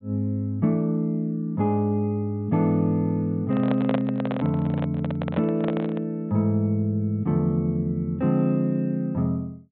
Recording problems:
low-pass filter; nothing above 4 kHz
handling noise; from 3.5 to 6 s; peak +1 dB vs average level

